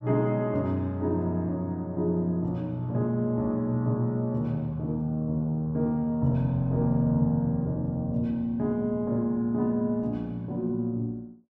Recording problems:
none

